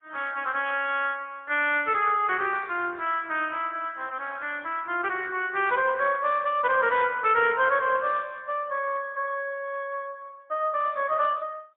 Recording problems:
phone line; 320 Hz to 3.4 kHz, AMR-NB, then MP3

